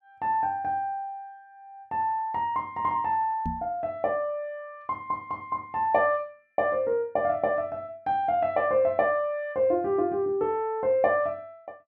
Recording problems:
microphone thump; at 3.5 s; peak -2 dB vs average level

